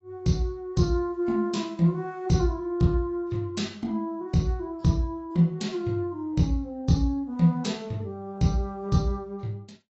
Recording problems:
lossy codec; AAC, log-spectral distance 2 dB, nothing above 7.6 kHz

